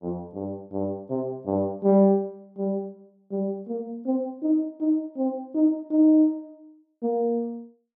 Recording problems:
none

